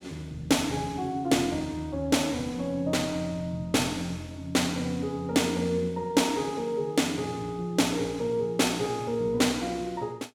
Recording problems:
none

